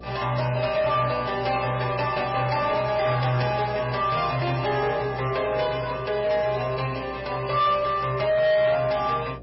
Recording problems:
codec artefacts; MP3, log-spectral distance 5 dB, nothing above 5.5 kHz
distortion; soft clipping, signal-to-distortion ratio 10 dB
electrical hum; 60 Hz, harmonics up to 720 Hz, SNR 20 dB

